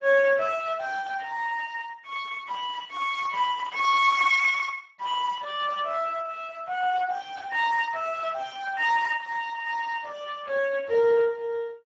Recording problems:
lossy compression; Speex, log-spectral distance 3 dB, nothing above 7.3 kHz

